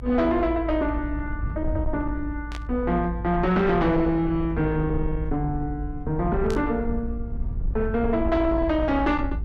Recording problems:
distortion; soft clipping, signal-to-distortion ratio 11 dB
rumble; below 82 Hz, SNR 7 dB
burst of static; at 2.5 s and at 6.5 s; peak -10 dB vs average level

